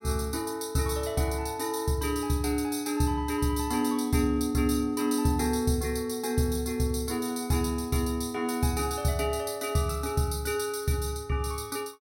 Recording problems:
none

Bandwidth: 16 kHz